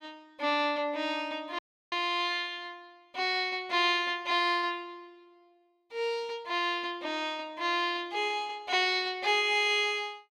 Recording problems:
audio cutting out; at 1.5 s

